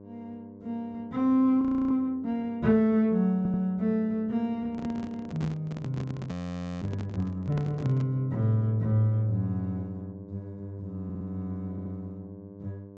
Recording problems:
treble missing; nothing above 8 kHz
hum; 50 Hz, harmonics up to 1.1 kHz, SNR 18 dB
audio freezing; at 1.5 s and at 6.5 s for 0.5 s
audio stuttering; at 3.5 s, at 11 s and at 12 s
handling noise; from 4.5 to 8 s; peak -4 dB vs average level

